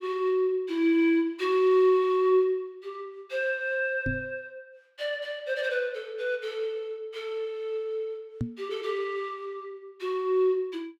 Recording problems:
microphone thump; at 4 s and at 8.5 s; peak +1 dB vs average level

